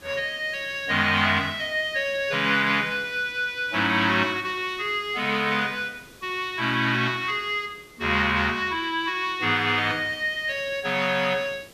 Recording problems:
hiss; SNR 25 dB

